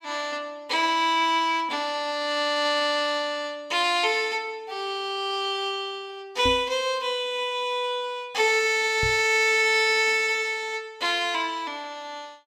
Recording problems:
knock on the microphone; at 6.5 s and at 9 s; peak -4 dB vs average level

